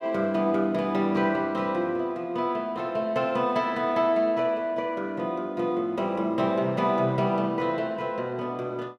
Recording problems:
none

